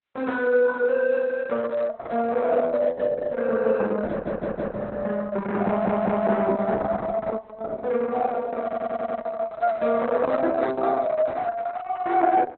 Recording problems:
lossy codec; Opus, log-spectral distance 3 dB, nothing above 4 kHz
audio stuttering; at 4 s, at 5.5 s and at 8.5 s

